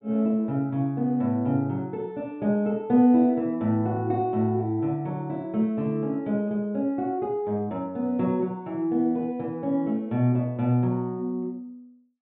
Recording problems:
treble cut off; nothing above 4 kHz

